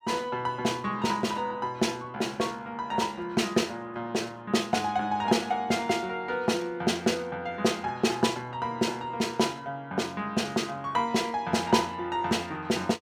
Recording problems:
none

